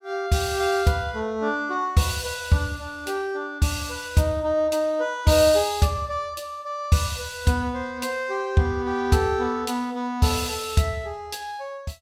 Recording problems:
none

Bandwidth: 16.5 kHz